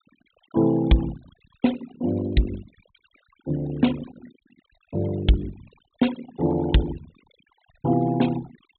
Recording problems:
treble cut off; nothing above 4 kHz
denoising artefacts; signal-to-artefact ratio 17 dB

